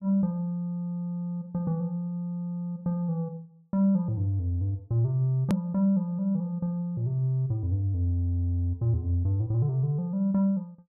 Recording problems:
hard cut with a click; at 5.5 s

